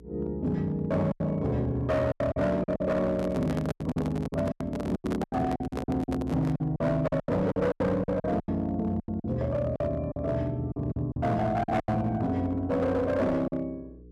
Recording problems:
distortion; hard clipping, uneven, signal-to-distortion ratio 12 dB
mains hum; 60 Hz, harmonics up to 480 Hz, SNR 19 dB
lost packets; 13% of the sound replaced, filled with silence
microphone handling noise; from 3 to 6.5 s; peak -2 dB vs average level

